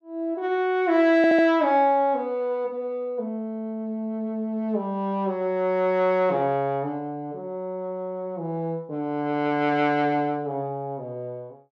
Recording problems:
stutter; at 1 s

